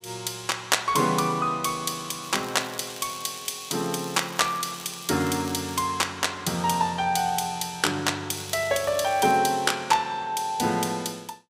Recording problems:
crackle; from 2 to 6 s and from 8.5 to 9.5 s; loose cable, SNR 17 dB

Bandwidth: 15.5 kHz